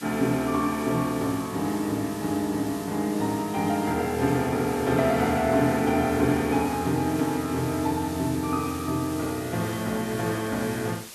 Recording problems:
background hiss; slope +1 dB per octave, SNR 15 dB

